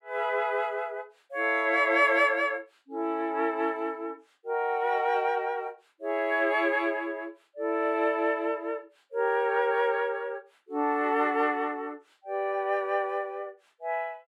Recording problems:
none

